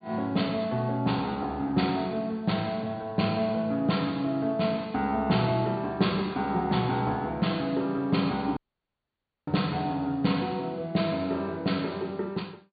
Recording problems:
treble cut off; nothing above 4.6 kHz
dropout; at 8.5 s for 1 s

